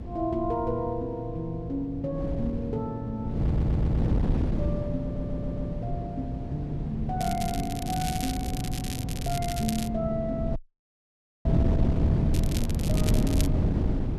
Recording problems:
electrical hum; 50 Hz, harmonics up to 500 Hz, SNR 19 dB
wind noise; below 200 Hz, SNR -2 dB
audio stuttering; at 3.5 s and at 5 s
crackle; from 7 to 10 s and from 12 to 13 s; loose cable, SNR 6 dB
audio cutting out; at 11 s for 1 s

